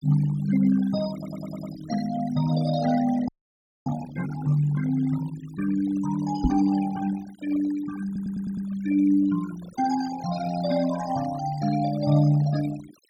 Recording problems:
noise reduction artefacts; signal-to-artefact ratio 16 dB
audio stuttering; at 1 s and at 8 s
audio freezing; at 3.5 s for 0.5 s
knock on the microphone; at 6.5 s; peak +6 dB vs average level

